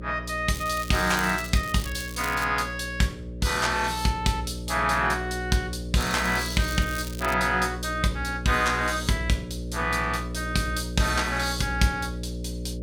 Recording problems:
hum; 60 Hz, harmonics up to 600 Hz, SNR 9 dB
crackle; from 0.5 to 2.5 s and from 6 to 7.5 s; loose cable, SNR 14 dB

